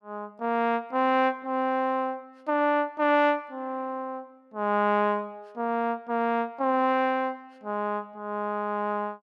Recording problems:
none

